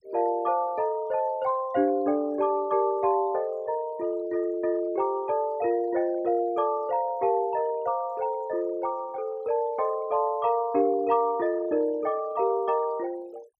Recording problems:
denoising artefacts; signal-to-artefact ratio 26 dB

